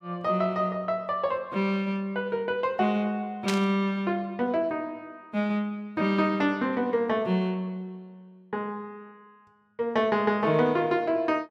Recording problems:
burst of static; at 3.5 s; peak +1 dB vs average level

